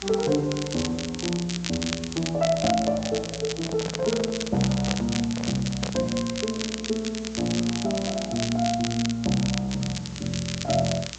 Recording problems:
treble missing; nothing above 8 kHz
hum; 60 Hz, harmonics up to 420 Hz, SNR 21 dB
hiss; slope +1 dB per octave, SNR 19 dB
crackling; vinyl, SNR 7 dB
handling noise; from 3.5 to 6 s; peak -4 dB vs average level

